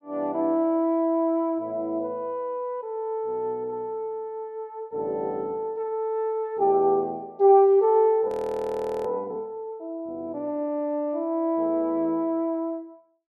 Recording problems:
audio freezing; at 8.5 s for 1 s

